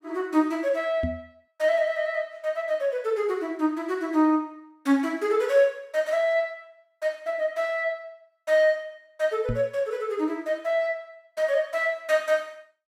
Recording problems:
knock on the microphone; at 1 s and at 9.5 s; peak 0 dB vs average level

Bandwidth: 16 kHz